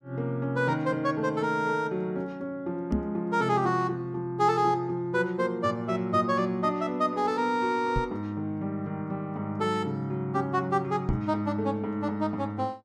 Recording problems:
knock on the microphone; at 3 s, at 8 s and at 11 s; peak +4 dB vs average level

